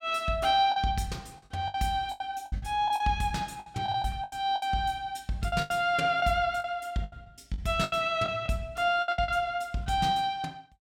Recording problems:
lost packets; 12% of the sound replaced, filled with the last packet

